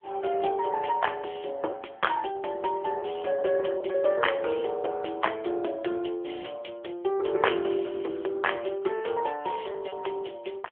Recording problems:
telephone audio; 300 Hz to 3.4 kHz, AMR-NB
packet loss; 3% of the sound replaced, filled with repeated pitch periods

